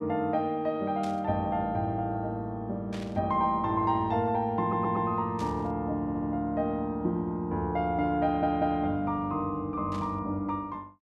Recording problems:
static burst; 4 times, first at 1 s; peak -11 dB vs average level
audio stuttering; at 4.5 s, at 6 s and at 8 s

